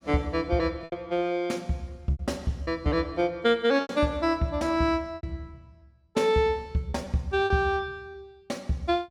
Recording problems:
lost packets; 6% of the sound replaced, filled with repeated pitch periods

